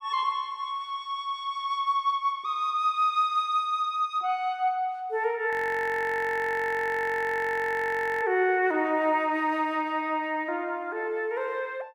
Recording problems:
audio freezing; at 5.5 s for 2.5 s

